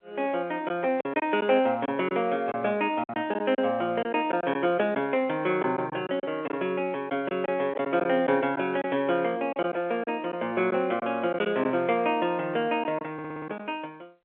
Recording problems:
telephone audio; 280 Hz to 3.5 kHz, G.711
lost packets; 6% of the sound replaced, filled with silence
audio stuttering; at 13 s

